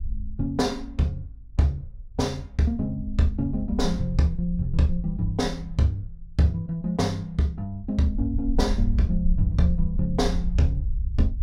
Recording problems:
rumble; below 60 Hz, SNR 5 dB

